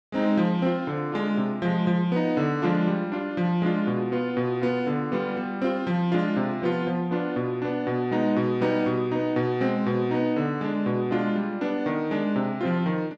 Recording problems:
none

